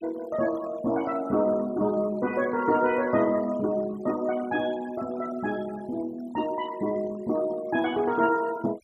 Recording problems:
denoising artefacts; signal-to-artefact ratio 20 dB

